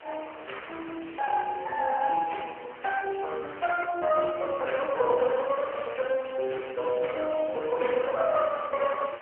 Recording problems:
phone line; 370 Hz to 3.1 kHz, AMR-NB
background hiss; SNR 18 dB

